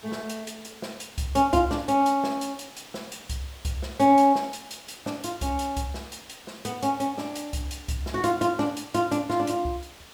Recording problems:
hiss; slope -2 dB per octave, SNR 20 dB

